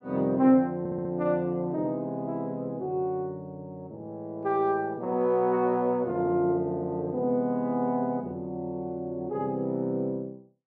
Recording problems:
stutter; at 1 s

